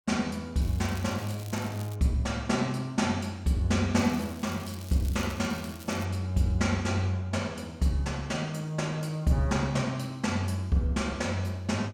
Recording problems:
crackle; from 0.5 to 2 s and from 4 to 6 s; loose cable, SNR 19 dB

